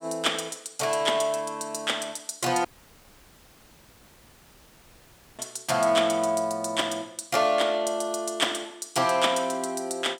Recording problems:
audio cutting out; at 2.5 s for 2.5 s

